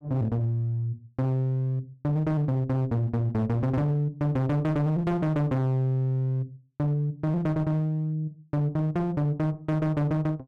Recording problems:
distorted audio; hard clipping, uneven, signal-to-distortion ratio 10 dB

